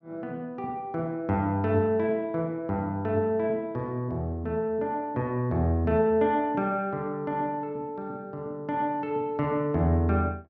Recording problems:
none

